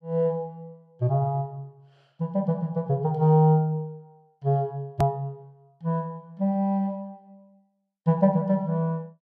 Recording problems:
hard cut with a click; at 5 s

